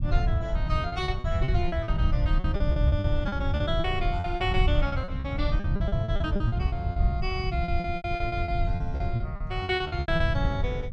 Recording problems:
rumble; below 110 Hz, SNR -3 dB
lost packets; 17% of the sound replaced, filled with repeated pitch periods

